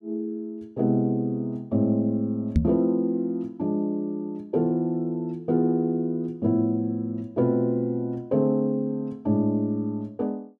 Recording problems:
microphone bump; at 2.5 s; peak +8 dB vs average level

